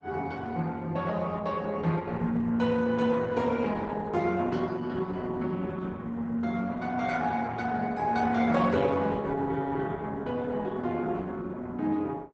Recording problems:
lossy codec; Opus, log-spectral distance 3 dB, nothing above 8 kHz

